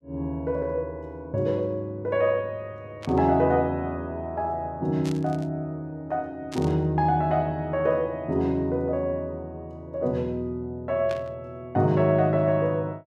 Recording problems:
burst of static; 4 times, first at 3 s; peak -9 dB vs average level

